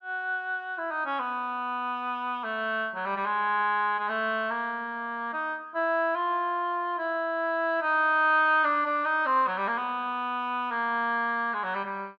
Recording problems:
none

